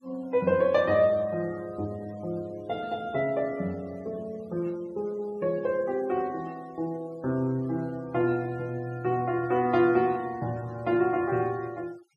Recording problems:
denoising artefacts; signal-to-artefact ratio 26 dB

